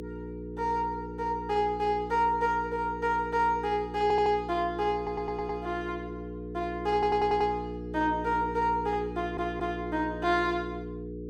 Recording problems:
electrical hum; 60 Hz, harmonics up to 480 Hz, SNR 9 dB
stutter; 4 times, first at 4 s

